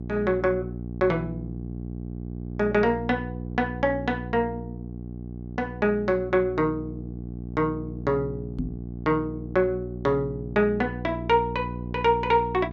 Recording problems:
mains hum; 60 Hz, harmonics up to 480 Hz, SNR 9 dB
microphone bump; at 8.5 s; peak -1 dB vs average level

